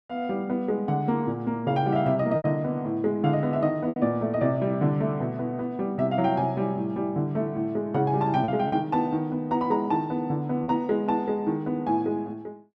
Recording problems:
packet loss; 2% of the sound replaced, filled with repeated pitch periods

